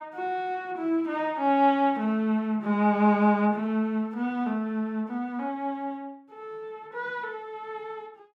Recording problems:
none

